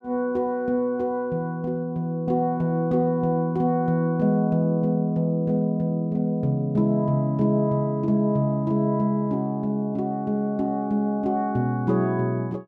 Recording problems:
none

